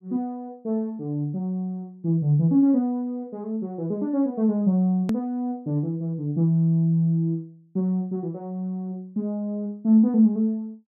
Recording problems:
click at an edit; at 5 s

